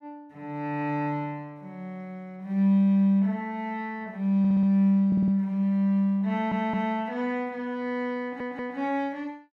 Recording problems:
audio stuttering; 4 times, first at 4.5 s

